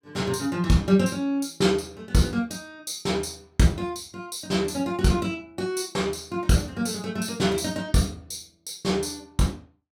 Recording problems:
none

